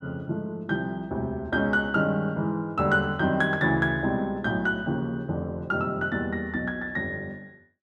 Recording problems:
none

